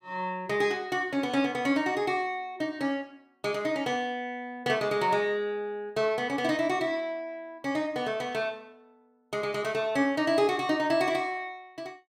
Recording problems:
none

